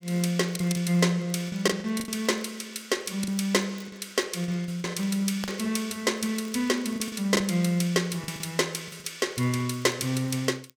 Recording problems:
crackle; vinyl, SNR 29 dB
lost packets; 8% of the sound replaced, filled with the last packet

